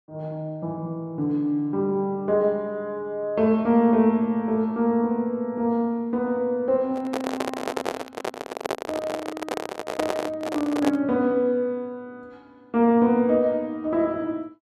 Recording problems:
handling noise; from 7 to 11 s; peak +2 dB vs average level

